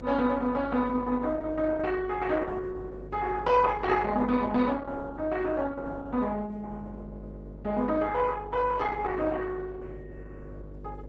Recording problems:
codec artefacts; Opus, log-spectral distance 3 dB
hum; 50 Hz, harmonics up to 600 Hz, SNR 17 dB

